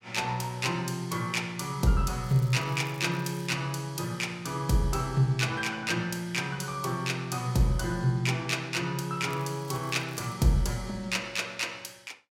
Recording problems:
crackling; from 2 to 3.5 s and from 9.5 to 10 s; loose cable, SNR 23 dB

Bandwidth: 16 kHz